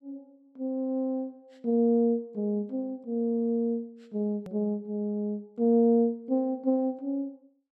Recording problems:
edit click; at 4.5 s

